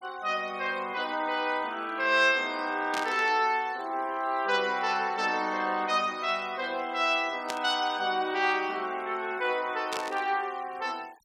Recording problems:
denoising artefacts; signal-to-artefact ratio 24 dB
burst of static; at 3 s, at 7.5 s and at 10 s; peak -3 dB vs average level

